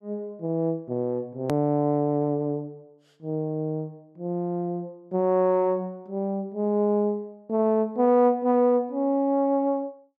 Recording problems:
edit click; at 1.5 s

